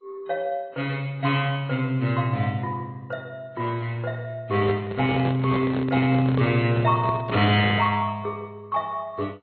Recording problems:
lossy compression; MP2, then AAC, log-spectral distance 2 dB, nothing above 4.2 kHz
handling noise; from 4.5 to 8 s; peak -1 dB vs average level

